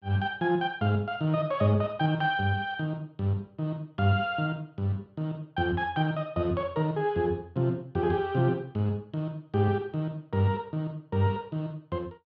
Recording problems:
none

